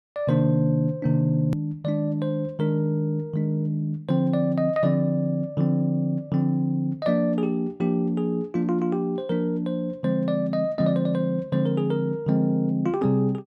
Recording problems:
edit click; at 1.5 s

